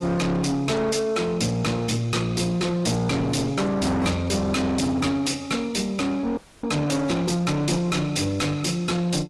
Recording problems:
lossy compression; AAC, log-spectral distance 3 dB, nothing above 11.3 kHz
distorted audio; soft clipping, signal-to-distortion ratio 7 dB
audio freezing; at 6.5 s

